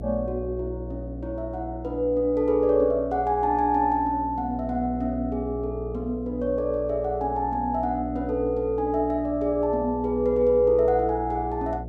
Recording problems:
hum; 60 Hz, harmonics up to 720 Hz, SNR 12 dB

